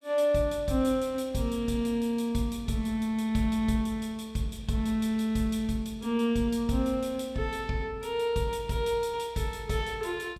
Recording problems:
none

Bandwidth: 16 kHz